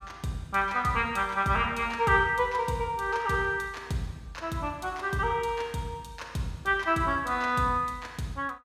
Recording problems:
none

